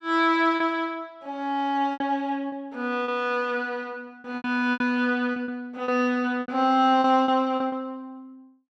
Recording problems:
lost packets; 9% of the sound replaced, filled with repeated pitch periods

